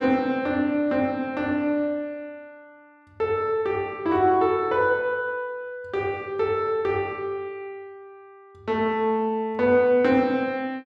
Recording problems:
none

